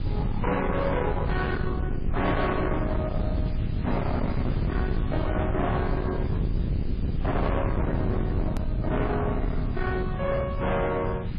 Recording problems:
lossy compression; AAC, then MP3, log-spectral distance 2 dB, nothing above 4.2 kHz
distortion; soft clipping, signal-to-distortion ratio 7 dB
hiss; SNR 20 dB
rumble; below 200 Hz, SNR 0 dB
hard cut with a click; at 8.5 s

